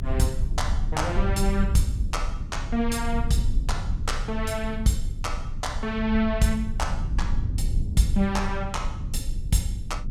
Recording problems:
rumble; below 76 Hz, SNR 2 dB

